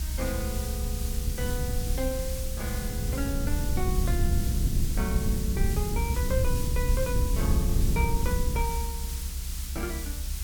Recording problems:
hiss; slope +3 dB per octave, SNR 3 dB
rumble; below 90 Hz, SNR -5 dB

